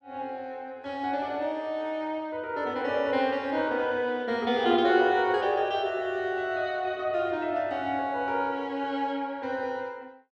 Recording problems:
none

